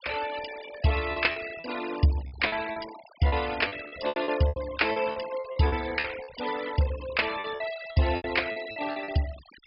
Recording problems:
low-pass filter; nothing above 5.2 kHz
denoising artefacts; signal-to-artefact ratio 14 dB
packet loss; 13% of the sound replaced, filled with repeated pitch periods

